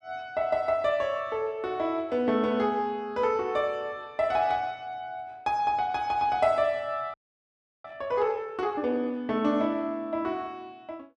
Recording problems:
frozen audio; at 7 s for 0.5 s

